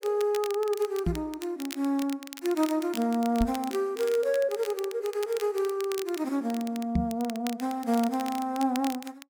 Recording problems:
crackle; vinyl, SNR 14 dB
microphone thump; at 1 s, at 3.5 s and at 7 s; peak +5 dB vs average level

